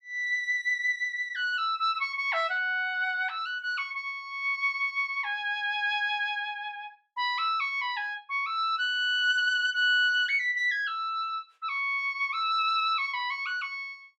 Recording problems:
none

